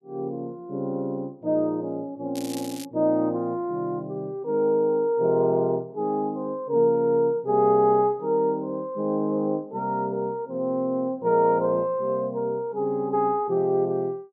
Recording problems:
crackling; at 2.5 s; loose cable, SNR 16 dB

